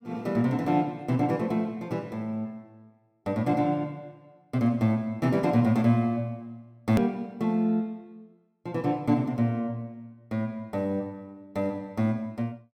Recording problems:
hard cut with a click; at 7 s

